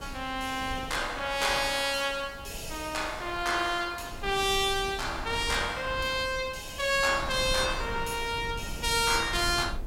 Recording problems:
background hiss; slope 0 dB per octave, SNR 30 dB
wind on the microphone; below 140 Hz, SNR 14 dB

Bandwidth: 16 kHz